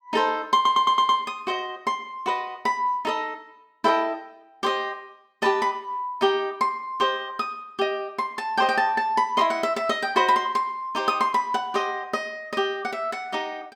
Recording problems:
audio stuttering; at 0.5 s

